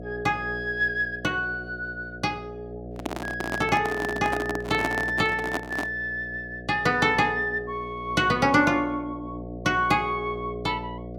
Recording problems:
hum; 60 Hz, harmonics up to 720 Hz, SNR 14 dB
microphone handling noise; from 3 to 6 s; peak +2 dB vs average level

